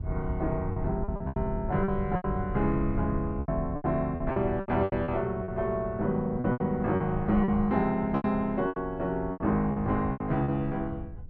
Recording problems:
wind on the microphone; below 100 Hz, SNR 10 dB
lost packets; 13% of the sound replaced, filled with repeated pitch periods

